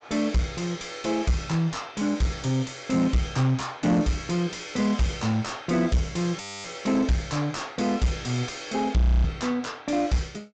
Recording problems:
low-pass filter; nothing above 8 kHz
distortion; soft clipping, signal-to-distortion ratio 7 dB
audio freezing; at 6.5 s and at 9 s

